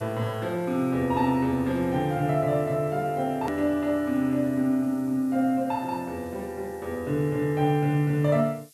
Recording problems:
hiss; slope +8 dB per octave, SNR 27 dB
hard cut with a click; at 3.5 s

